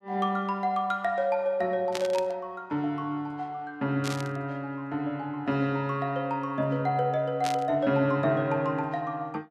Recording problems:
burst of static; at 2 s, at 4 s and at 7.5 s; peak -1 dB vs average level

